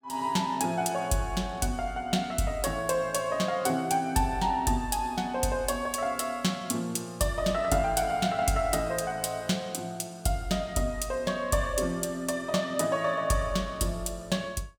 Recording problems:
none

